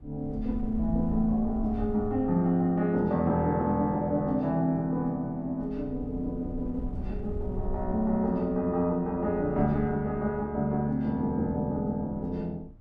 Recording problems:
wind on the microphone; below 78 Hz, SNR 13 dB

